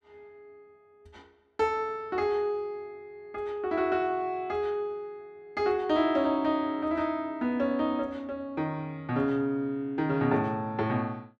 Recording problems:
none

